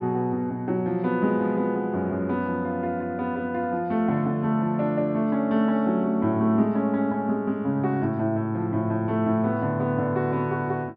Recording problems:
low-pass filter; nothing above 5.5 kHz

